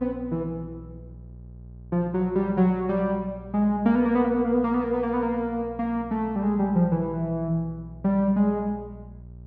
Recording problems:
hum; 60 Hz, harmonics up to 600 Hz, SNR 19 dB

